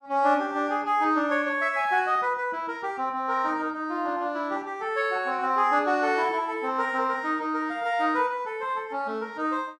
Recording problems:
none

